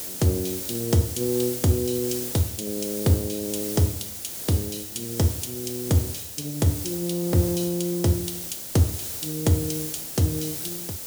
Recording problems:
background hiss; SNR 6 dB

